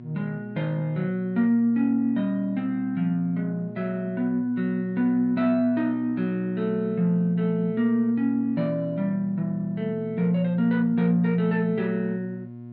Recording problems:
mains hum; 60 Hz, harmonics up to 720 Hz, SNR 16 dB

